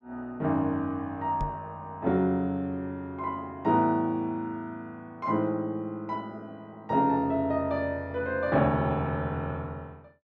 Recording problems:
microphone thump; at 1.5 s; peak -1 dB vs average level

